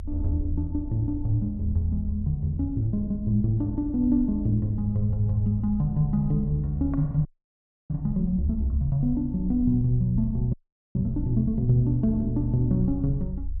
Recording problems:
low-frequency rumble; below 76 Hz, SNR 10 dB
audio freezing; at 7.5 s for 0.5 s and at 11 s

